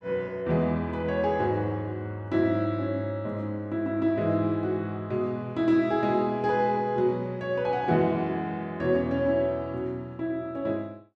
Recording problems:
none

